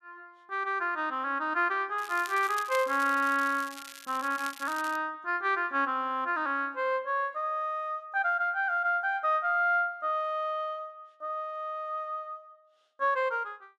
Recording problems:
crackle; from 2 to 5 s; loose cable, SNR 15 dB

